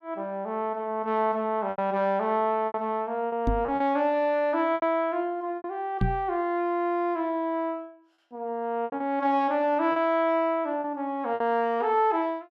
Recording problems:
lost packets; 6% of the sound replaced, filled with repeated pitch periods
microphone thump; at 3.5 s and at 6 s; peak +4 dB vs average level

